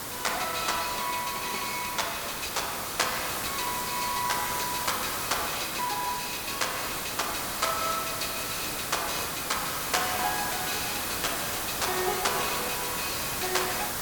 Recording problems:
hiss; SNR 1 dB

